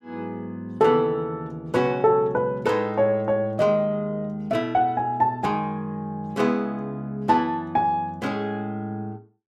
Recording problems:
none

